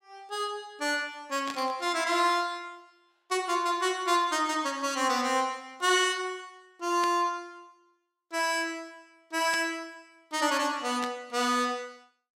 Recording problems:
static burst; 4 times, first at 1.5 s; peak -4 dB vs average level

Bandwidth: 16.5 kHz